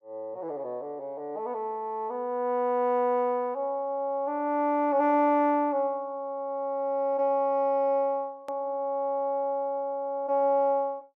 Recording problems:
hard cut with a click; at 8.5 s

